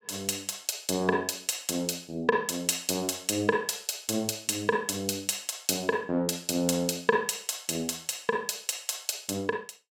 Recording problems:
none

